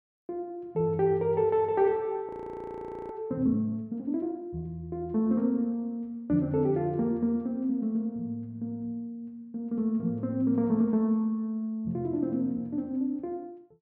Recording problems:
frozen audio; at 2.5 s for 1 s

